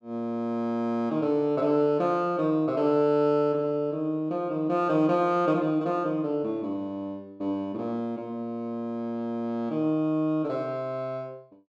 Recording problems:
none

